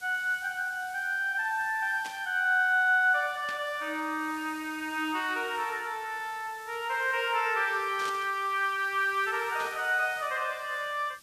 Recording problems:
background hiss; slope +1 dB per octave, SNR 21 dB
static burst; 4 times, first at 2 s; peak -8 dB vs average level

